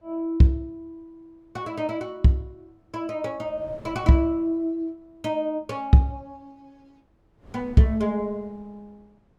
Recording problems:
wind noise; below 390 Hz, SNR 24 dB

